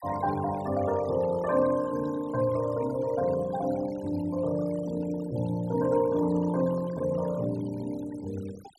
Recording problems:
denoising artefacts; signal-to-artefact ratio 18 dB

